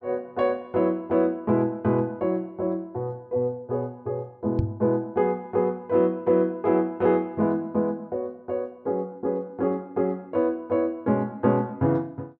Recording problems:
knock on the microphone; at 4.5 s; peak +4 dB vs average level

